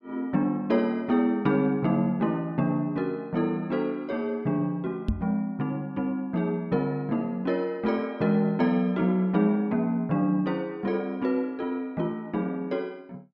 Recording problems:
knock on the microphone; at 5 s; peak +4 dB vs average level

